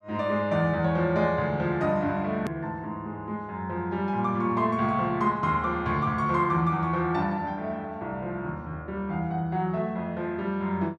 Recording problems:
hard cut with a click; at 2.5 s

